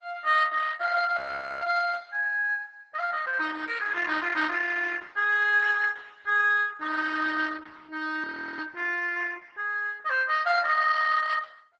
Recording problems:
codec artefacts; Opus, log-spectral distance 4 dB, nothing above 8 kHz
audio freezing; at 1 s and at 8 s

